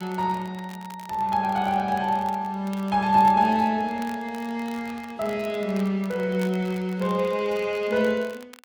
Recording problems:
crackling; vinyl, SNR 23 dB

